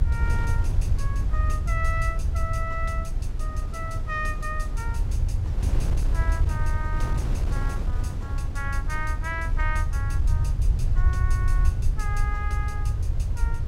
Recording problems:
low-frequency rumble; below 82 Hz, SNR -7 dB
wind on the microphone; below 190 Hz, SNR 3 dB

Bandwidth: 16 kHz